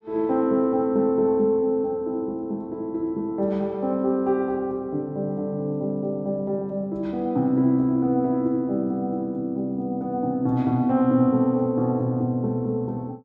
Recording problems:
none

